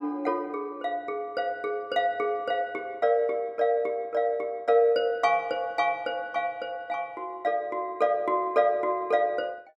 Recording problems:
none

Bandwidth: 14.5 kHz